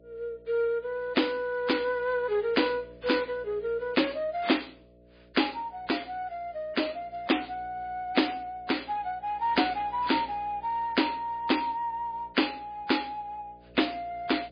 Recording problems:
lossy compression; MP3, log-spectral distance 4 dB, nothing above 4.8 kHz
hum; 60 Hz, harmonics up to 660 Hz, SNR 25 dB

